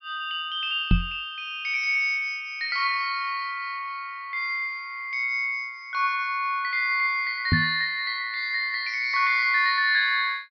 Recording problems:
low-pass filter; nothing above 5.5 kHz
microphone bump; at 1 s and at 7.5 s; peak +7 dB vs average level

